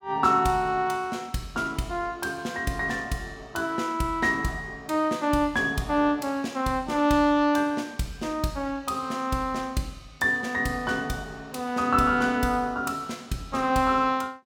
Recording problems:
none

